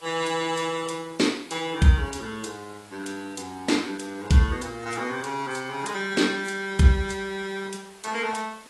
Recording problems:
lossy compression; AAC, log-spectral distance 6 dB, nothing above 11 kHz
background hiss; SNR 23 dB

